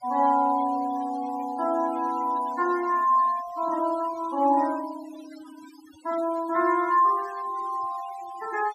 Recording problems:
noise reduction artefacts; signal-to-artefact ratio 18 dB

